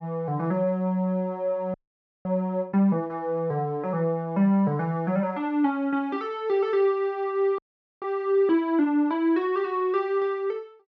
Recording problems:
frozen audio; at 1.5 s for 0.5 s and at 7.5 s

